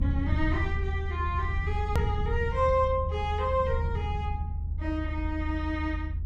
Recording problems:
rumble; below 82 Hz, strongest tone 78 Hz, SNR 0 dB
edit click; at 2 s

